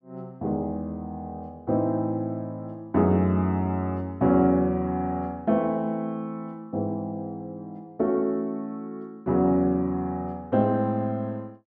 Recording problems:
none

